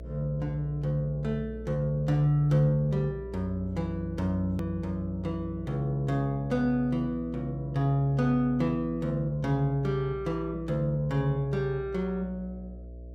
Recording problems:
electrical hum; 60 Hz, harmonics up to 660 Hz, SNR 14 dB
edit click; at 4.5 s

